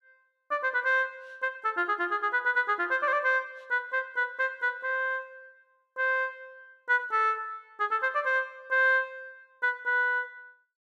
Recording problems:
none

